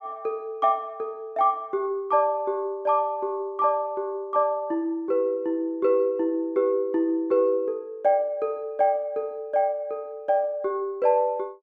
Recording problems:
none

